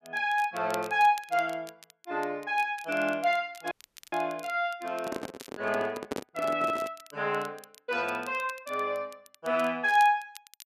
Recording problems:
crackle; vinyl, SNR 21 dB
dropout; at 3.5 s
handling noise; from 5 to 7 s; peak 0 dB vs average level

